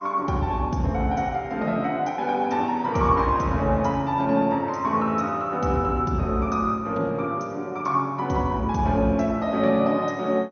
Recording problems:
lossy codec; MP2, log-spectral distance 2 dB, nothing above 6.3 kHz

